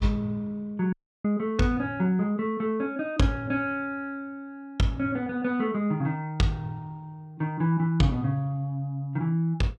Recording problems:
audio cutting out; at 1 s

